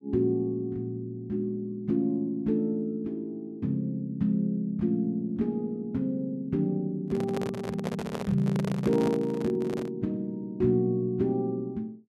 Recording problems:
handling noise; from 7 to 10 s; peak -1 dB vs average level

